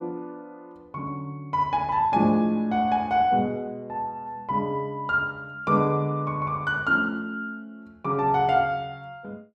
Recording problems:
none

